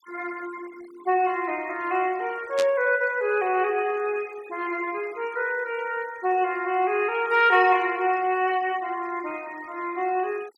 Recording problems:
denoising artefacts; signal-to-artefact ratio 23 dB
static burst; at 2.5 s; peak -3 dB vs average level

